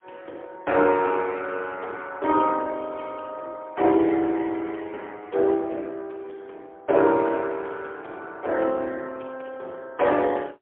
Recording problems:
phone line; 300 Hz to 3.5 kHz, AMR-NB, then MP3

